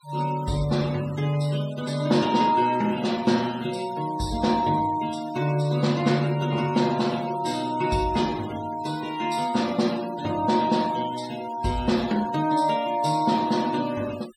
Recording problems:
noise reduction artefacts; signal-to-artefact ratio 19 dB

